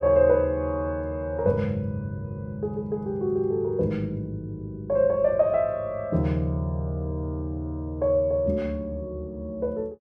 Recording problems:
none

